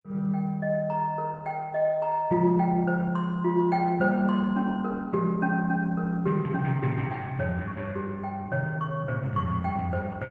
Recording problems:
lossy compression; Opus, log-spectral distance 2 dB

